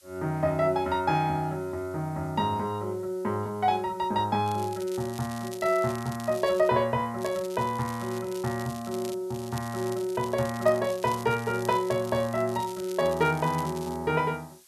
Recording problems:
hiss; slope +3 dB per octave, SNR 27 dB
crackle; from 4.5 to 6.5 s, from 7 to 9 s and from 9.5 to 14 s; loose cable, SNR 17 dB

